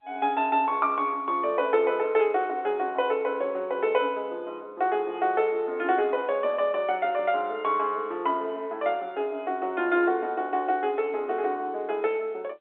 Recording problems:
phone line; 300 Hz to 3.5 kHz, G.711

